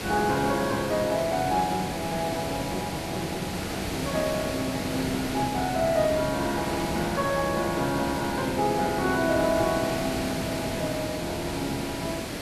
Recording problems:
hiss; SNR 4 dB

